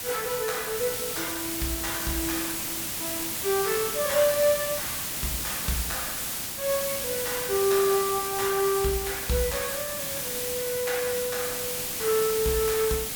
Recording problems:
background hiss; slope 0 dB per octave, SNR 1 dB

